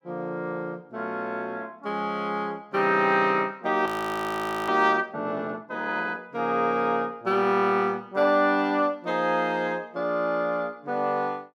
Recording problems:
frozen audio; at 4 s for 1 s

